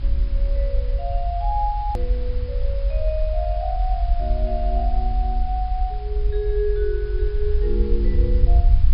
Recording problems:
low-pass filter; nothing above 5.5 kHz
hiss; SNR 19 dB
rumble; below 52 Hz, SNR -5 dB
hard cut with a click; at 2 s

